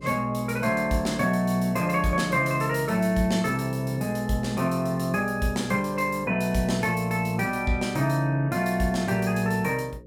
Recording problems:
hum; 60 Hz, harmonics up to 540 Hz, SNR 21 dB

